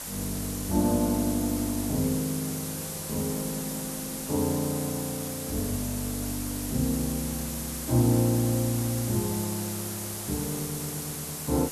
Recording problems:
hiss; SNR 5 dB

